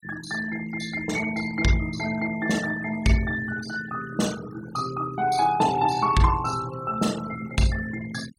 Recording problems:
noise reduction artefacts; signal-to-artefact ratio 14 dB

